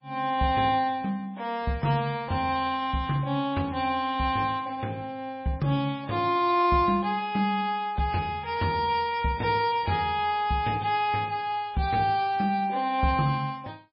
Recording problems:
codec artefacts; MP3, log-spectral distance 2 dB, nothing above 4.8 kHz

